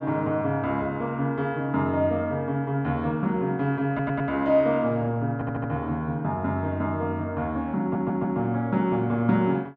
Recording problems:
audio stuttering; at 4 s, at 5.5 s and at 8 s

